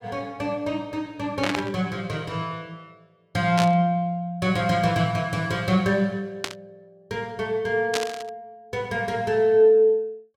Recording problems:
static burst; 4 times, first at 1.5 s; peak +2 dB vs average level

